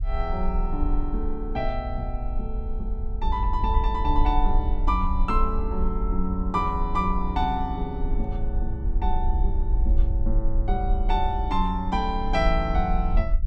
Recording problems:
low-frequency rumble; below 52 Hz, SNR 0 dB

